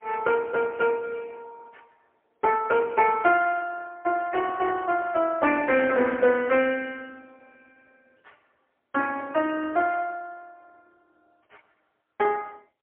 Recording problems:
phone line; 340 Hz to 3.2 kHz, AMR-NB, then MP3

